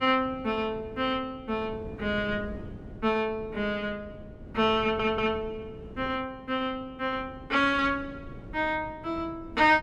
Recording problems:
wind on the microphone; below 300 Hz, SNR 16 dB
stutter; at 5 s

